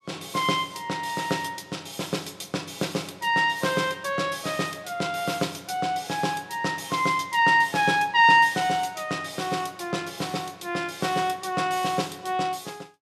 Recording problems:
none

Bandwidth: 14.5 kHz